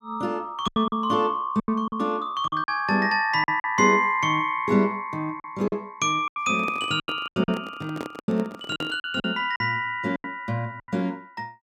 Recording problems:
lost packets; 10% of the sound replaced, filled with silence
microphone handling noise; from 6.5 to 9 s; peak -5 dB vs average level

